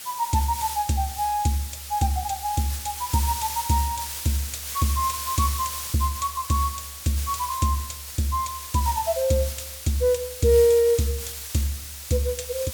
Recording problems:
background hiss; slope +2 dB per octave, SNR 7 dB

